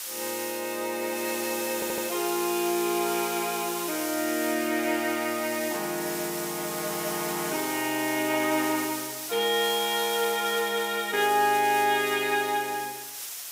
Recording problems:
background hiss; slope +3 dB per octave, SNR 7 dB
stutter; at 1.5 s

